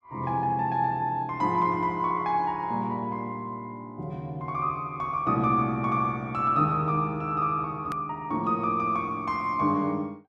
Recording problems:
click at an edit; at 8 s

